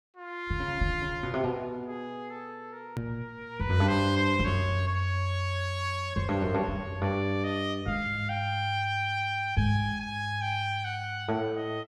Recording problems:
edit click; at 3 s

